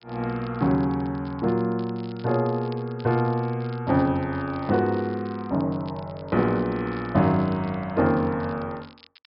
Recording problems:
treble cut off; nothing above 5.5 kHz
crackle; vinyl, SNR 27 dB

